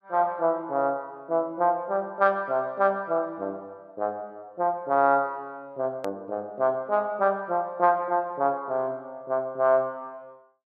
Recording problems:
hard cut with a click; at 6 s

